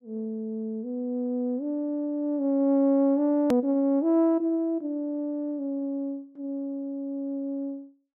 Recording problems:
click at an edit; at 3.5 s

